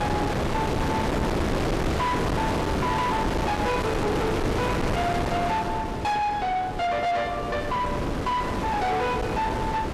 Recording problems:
distortion; soft clipping, signal-to-distortion ratio 5 dB
wind noise; below 990 Hz, SNR 1 dB

